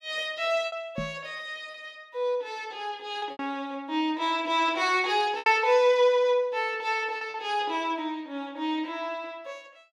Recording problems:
packet loss; 4% of the sound replaced, filled with repeated pitch periods
knock on the microphone; at 1 s; peak -3 dB vs average level

